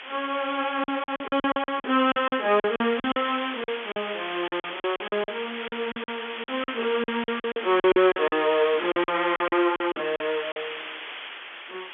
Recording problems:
telephone audio; 240 Hz to 3.5 kHz, G.711
hiss; SNR 10 dB
lost packets; 16% of the sound replaced, filled with silence

